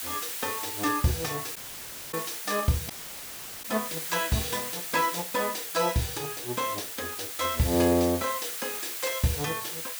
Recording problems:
background hiss; SNR 4 dB
audio cutting out; at 1.5 s for 0.5 s and at 3 s for 0.5 s

